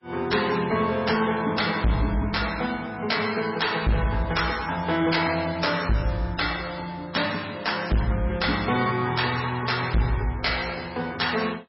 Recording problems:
lossy compression; MP3, log-spectral distance 7 dB, nothing above 5.5 kHz
distorted audio; hard clipping, signal-to-distortion ratio 6 dB

